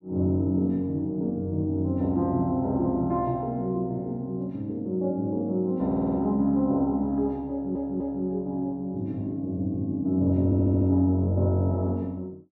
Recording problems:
audio stuttering; at 6 s, at 7.5 s and at 10 s

